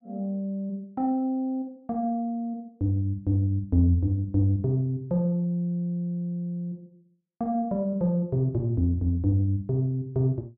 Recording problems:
none

